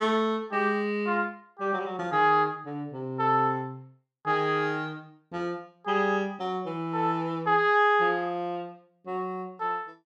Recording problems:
none

